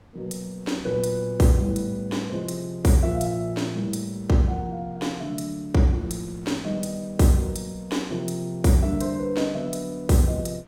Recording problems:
wind on the microphone; below 570 Hz, SNR 27 dB

